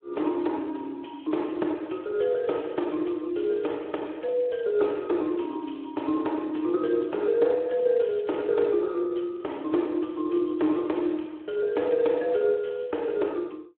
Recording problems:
telephone audio; 260 Hz to 3.5 kHz, Speex

